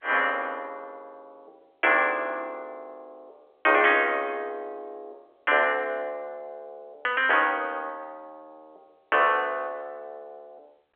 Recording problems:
telephone audio; 300 Hz to 3.4 kHz, G.711

